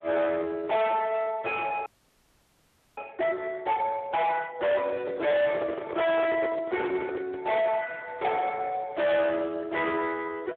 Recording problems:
phone line; 340 Hz to 3.7 kHz, Speex
distorted audio; hard clipping, signal-to-distortion ratio 6 dB
frozen audio; at 2 s for 1 s
microphone handling noise; from 5 to 7.5 s; peak 0 dB vs average level

